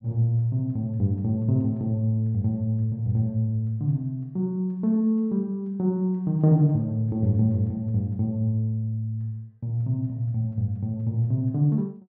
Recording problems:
none

